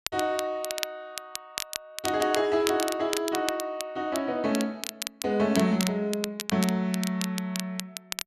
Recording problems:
crackle; vinyl, SNR 7 dB

